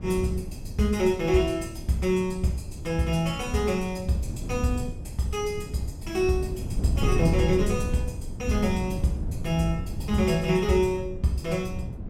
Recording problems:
wind noise; below 160 Hz, SNR 7 dB

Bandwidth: 16.5 kHz